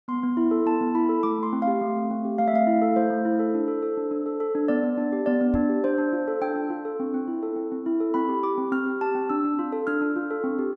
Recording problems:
knock on the microphone; at 5.5 s; peak -3 dB vs average level

